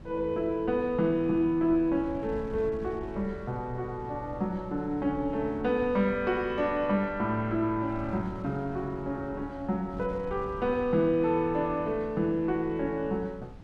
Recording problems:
wind on the microphone; below 180 Hz, SNR 17 dB

